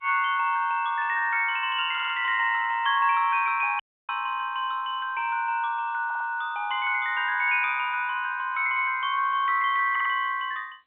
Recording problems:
phone line; 190 Hz to 3.5 kHz, G.711
stutter; at 2 s, at 6 s and at 10 s
audio cutting out; at 4 s

